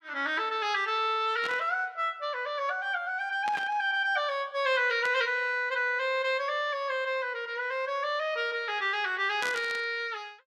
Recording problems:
static burst; 4 times, first at 1.5 s; peak -4 dB vs average level

